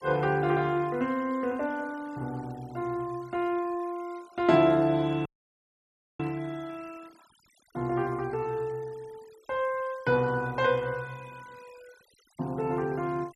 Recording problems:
noise reduction artefacts; signal-to-artefact ratio 26 dB
dropout; at 5.5 s for 1 s

